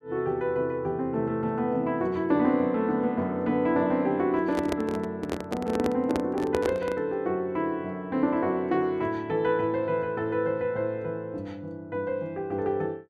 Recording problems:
handling noise; from 4.5 to 7 s; peak +3 dB vs average level

